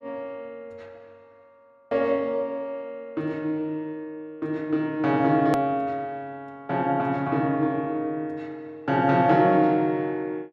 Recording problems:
click at an edit; at 5.5 s

